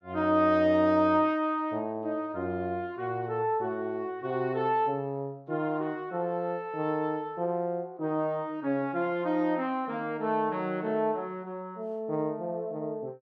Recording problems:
none

